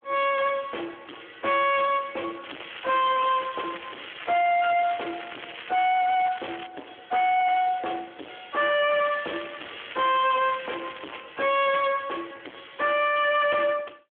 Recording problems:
phone line; 260 Hz to 3.4 kHz, Speex
distortion; hard clipping, signal-to-distortion ratio 5 dB
crackling; from 2.5 to 6.5 s and from 9 to 11 s; loose cable, SNR 15 dB

